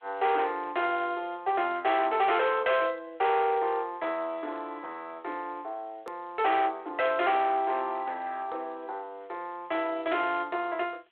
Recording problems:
telephone audio; 340 Hz to 3.6 kHz, G.726
distorted audio; hard clipping, signal-to-distortion ratio 11 dB
background hiss; SNR 42 dB
hard cut with a click; at 6 s

